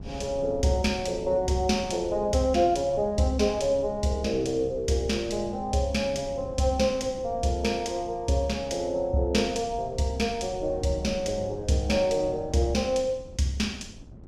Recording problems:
wind noise; below 230 Hz, SNR 16 dB

